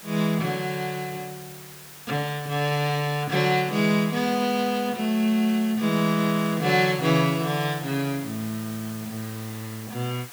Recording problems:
background hiss; slope -1 dB per octave, SNR 16 dB

